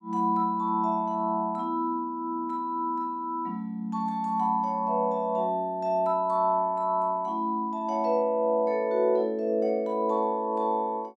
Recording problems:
none

